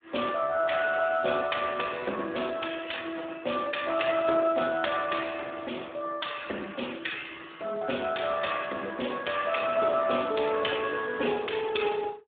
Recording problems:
phone line; 280 Hz to 3.6 kHz, Speex

